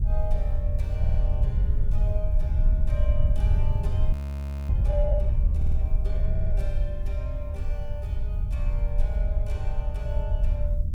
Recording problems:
hiss; SNR 29 dB
wind on the microphone; below 70 Hz, SNR -13 dB
stutter; at 1 s, at 5.5 s and at 6.5 s
audio freezing; at 4 s for 0.5 s

